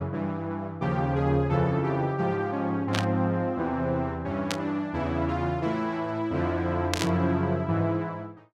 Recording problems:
static burst; at 3 s, at 4.5 s and at 7 s; peak +3 dB vs average level

